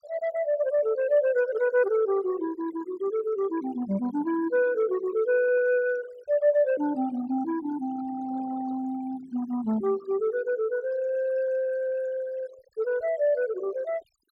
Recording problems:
denoising artefacts; signal-to-artefact ratio 20 dB

